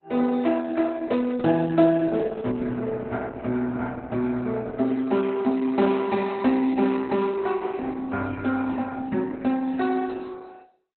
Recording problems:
lossy codec; Opus, log-spectral distance 3 dB, nothing above 4 kHz

